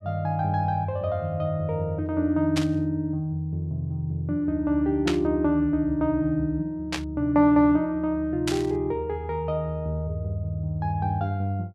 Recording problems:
burst of static; 4 times, first at 2.5 s; peak +1 dB vs average level

